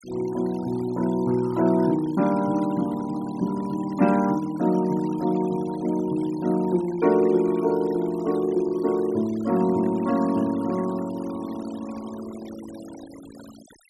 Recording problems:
noise reduction artefacts; signal-to-artefact ratio 21 dB

